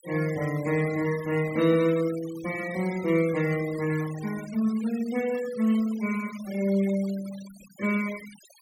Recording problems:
noise reduction artefacts; signal-to-artefact ratio 17 dB

